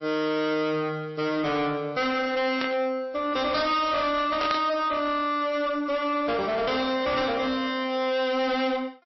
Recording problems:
codec artefacts; MP3, log-spectral distance 3 dB, nothing above 5.7 kHz
distorted audio; soft clipping, signal-to-distortion ratio 7 dB
static burst; at 2.5 s and at 4.5 s; peak -1 dB vs average level

